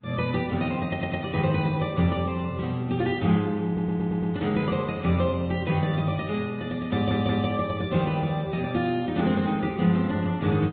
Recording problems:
low-pass filter; nothing above 4 kHz
lossy codec; Vorbis, then AAC, log-spectral distance 3 dB
stutter; at 1 s, at 3.5 s and at 7 s

